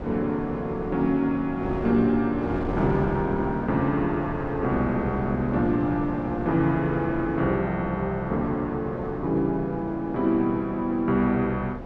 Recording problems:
wind on the microphone; below 570 Hz, SNR 10 dB

